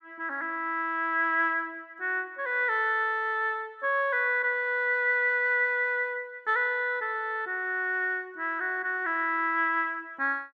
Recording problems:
none

